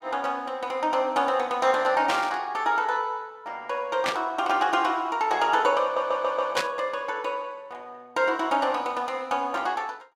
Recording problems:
static burst; at 2 s, at 4 s and at 6.5 s; peak +2 dB vs average level
audio stuttering; at 6 s

